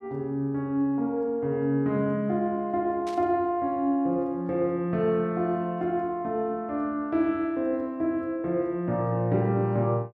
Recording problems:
static burst; at 3 s; peak -12 dB vs average level

